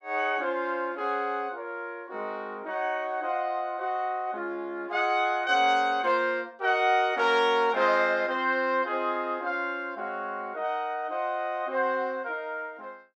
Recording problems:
none

